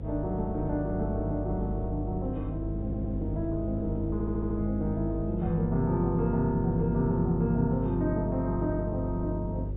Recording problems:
treble cut off; nothing above 4 kHz
hum; 50 Hz, harmonics up to 550 Hz, SNR 5 dB
low-frequency rumble; below 140 Hz, SNR 15 dB
stutter; at 3 s and at 4 s

